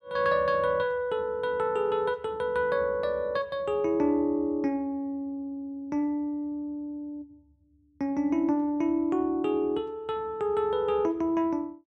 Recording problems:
none

